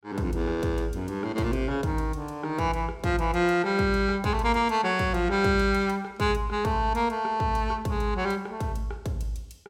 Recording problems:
none

